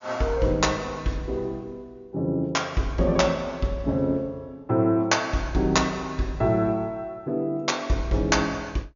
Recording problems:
treble cut off; nothing above 7 kHz

